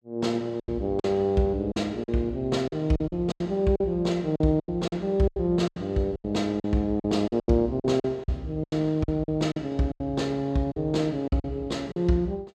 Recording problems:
lost packets; 13% of the sound replaced, filled with silence

